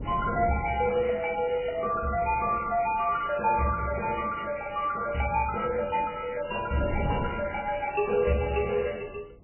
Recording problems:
lossy compression; MP3, log-spectral distance 7 dB, nothing above 2.4 kHz
wind noise; below 270 Hz, SNR 15 dB

